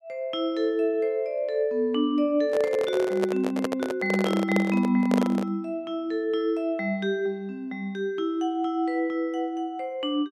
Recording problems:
microphone handling noise; from 2.5 to 5.5 s; peak +3 dB vs average level

